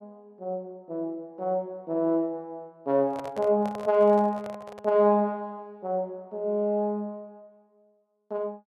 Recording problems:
handling noise; from 3 to 5 s; peak -9 dB vs average level

